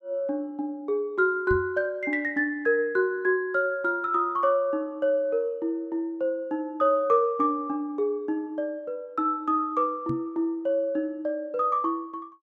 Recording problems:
microphone bump; at 1.5 s and at 10 s; peak -2 dB vs average level

